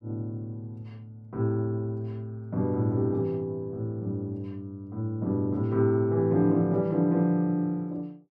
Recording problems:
none

